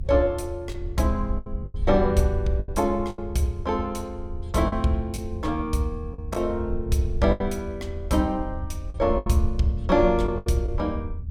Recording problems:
rumble; below 80 Hz, SNR 8 dB
packet loss; 7% of the sound replaced, filled with the last packet

